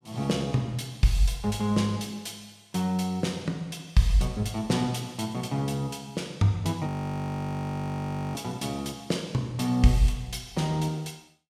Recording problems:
audio freezing; at 7 s for 1.5 s

